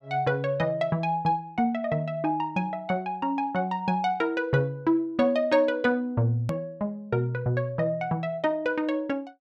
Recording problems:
edit click; at 6.5 s

